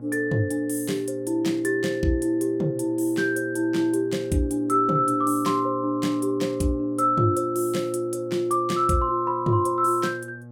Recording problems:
hum; 60 Hz, harmonics up to 840 Hz, SNR 18 dB

